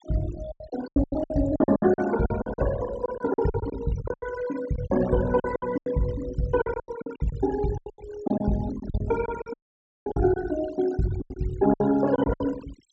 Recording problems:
low-pass filter; nothing above 8 kHz
denoising artefacts; signal-to-artefact ratio 14 dB
packet loss; 17% of the sound replaced, filled with silence
dropout; at 9.5 s for 0.5 s

